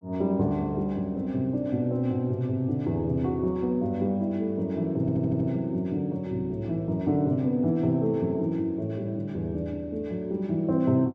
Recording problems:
stutter; at 5 s

